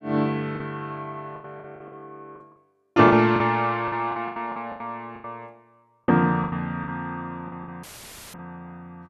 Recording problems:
packet loss; 13% of the sound replaced, filled with the last packet
audio cutting out; at 8 s for 0.5 s; filled with static

